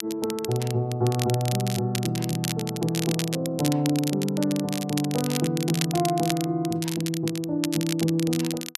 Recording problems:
crackling; vinyl, SNR 8 dB

